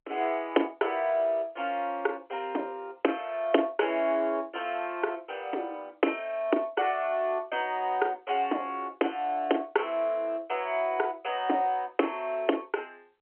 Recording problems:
telephone audio; 260 Hz to 3.2 kHz, G.711

